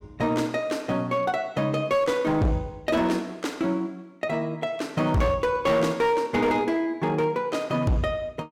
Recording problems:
distortion; hard clipping, signal-to-distortion ratio 12 dB

